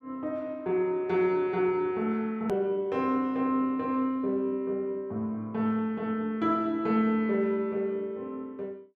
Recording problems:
hard cut with a click; at 2.5 s

